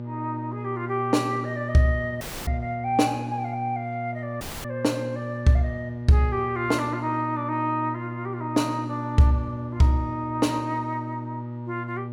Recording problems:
electrical hum; 60 Hz, harmonics up to 840 Hz, SNR 8 dB
dropout; at 2 s and at 4.5 s

